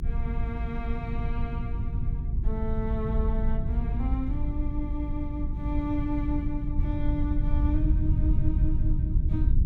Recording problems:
hum; 50 Hz, harmonics up to 400 Hz, SNR 11 dB
rumble; below 82 Hz, SNR -5 dB

